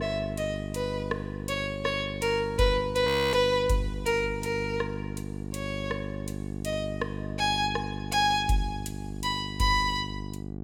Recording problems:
hum; 50 Hz, harmonics up to 800 Hz, SNR 8 dB
frozen audio; at 3 s

